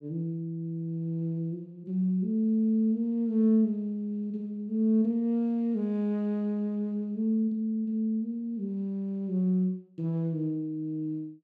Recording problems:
none

